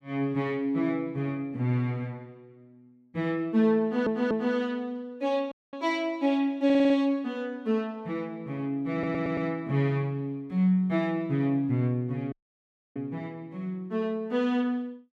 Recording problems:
stutter; at 4 s, at 6.5 s and at 9 s
dropout; at 5.5 s and at 12 s for 0.5 s

